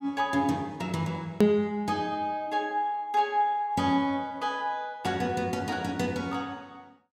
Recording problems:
click at an edit; at 1.5 s

